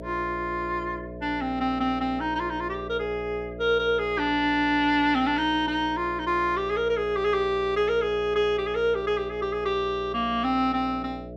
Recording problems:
hum; 60 Hz, harmonics up to 660 Hz, SNR 13 dB

